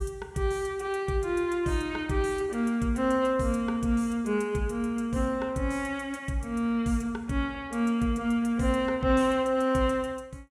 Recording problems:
none

